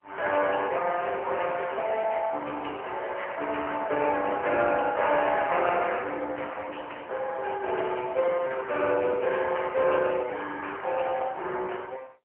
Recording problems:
telephone audio; 340 Hz to 3.1 kHz, AMR-NB, then MP3

